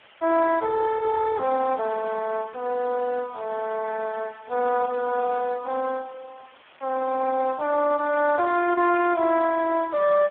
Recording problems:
telephone audio; 280 Hz to 2.2 kHz, Speex
hiss; SNR 27 dB

